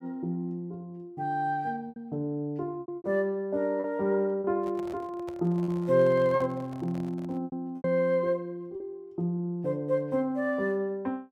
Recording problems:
lost packets; 5% of the sound replaced, filled with repeated pitch periods
microphone handling noise; from 4.5 to 7.5 s; peak -10 dB vs average level

